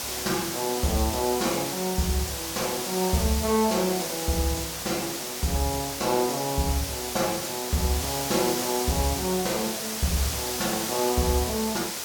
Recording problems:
hiss; slope -1 dB per octave, SNR 2 dB

